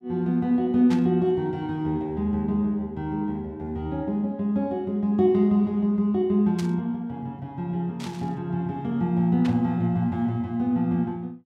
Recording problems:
burst of static; 4 times, first at 1 s; peak -9 dB vs average level

